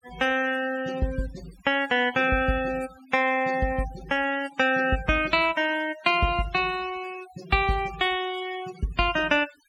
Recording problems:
noise reduction artefacts; signal-to-artefact ratio 19 dB

